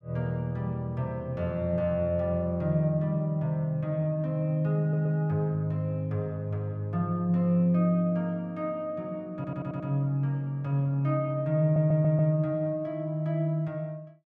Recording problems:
audio stuttering; at 5 s, at 9.5 s and at 12 s

